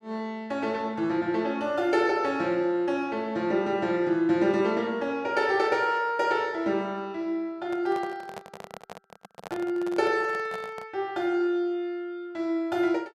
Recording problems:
handling noise; from 7.5 to 11 s; peak -7 dB vs average level

